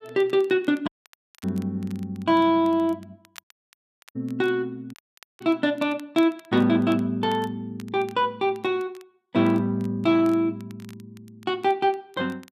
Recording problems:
crackle; vinyl, SNR 28 dB
dropout; at 1 s for 0.5 s, at 3.5 s for 0.5 s and at 5 s

